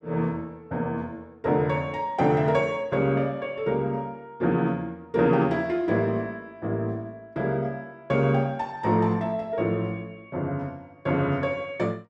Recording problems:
none

